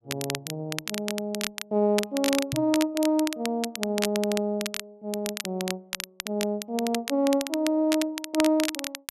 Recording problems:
crackle; vinyl, SNR 6 dB
knock on the microphone; at 2.5 s; peak 0 dB vs average level

